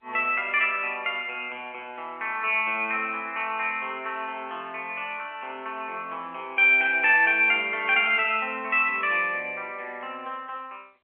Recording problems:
telephone audio; 300 Hz to 3.2 kHz, G.711

